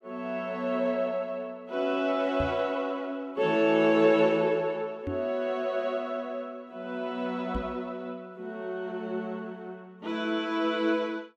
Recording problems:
microphone thump; at 2.5 s, at 5 s and at 7.5 s; peak -2 dB vs average level

